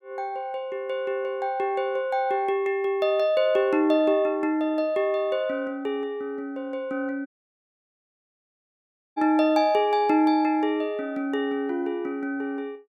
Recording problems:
audio cutting out; at 7.5 s for 2 s

